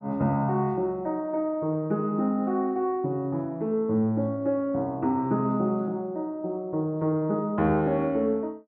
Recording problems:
none

